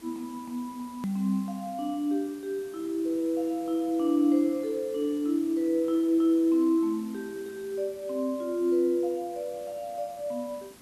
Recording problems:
background hiss; slope -3 dB per octave, SNR 23 dB
edit click; at 1 s

